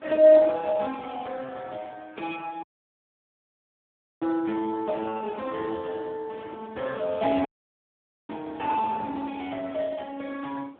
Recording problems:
phone line; 240 Hz to 2.2 kHz, Speex
wind noise; below 870 Hz, SNR 22 dB
dropout; at 2.5 s for 1.5 s and at 7.5 s for 1 s

